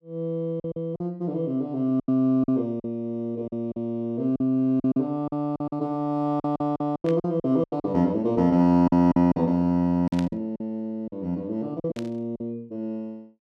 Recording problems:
packet loss; 11% of the sound replaced, filled with silence
static burst; at 7 s, at 10 s and at 12 s; peak -9 dB vs average level

